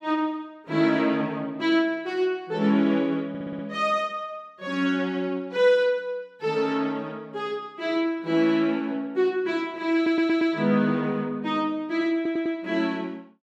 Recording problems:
stutter; at 3.5 s, at 10 s and at 12 s

